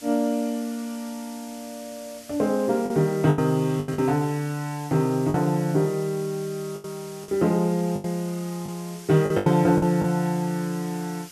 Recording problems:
hiss; SNR 19 dB
lost packets; 6% of the sound replaced, filled with the last packet

